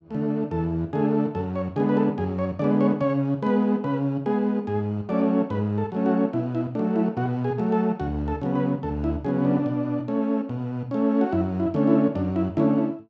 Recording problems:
none

